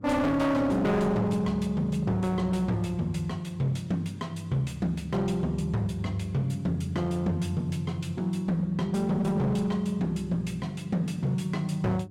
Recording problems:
distortion; hard clipping, signal-to-distortion ratio 8 dB
electrical hum; 50 Hz, harmonics up to 400 Hz, SNR 21 dB

